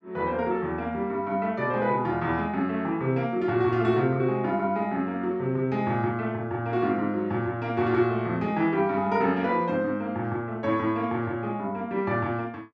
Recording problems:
none

